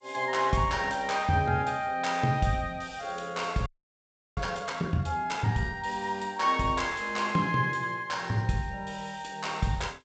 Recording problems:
lossy codec; G.722, log-spectral distance 3 dB, nothing above 7.8 kHz
audio freezing; at 3.5 s for 0.5 s

